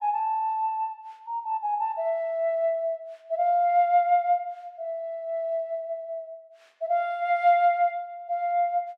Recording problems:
none

